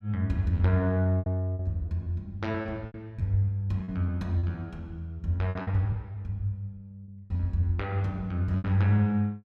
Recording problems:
packet loss; 9% of the sound replaced, filled with repeated pitch periods

